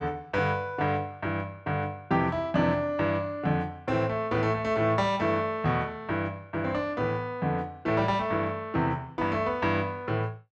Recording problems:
none

